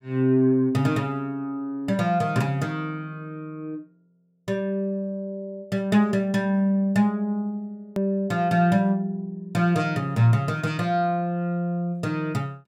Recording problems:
hard cut with a click; at 8 s

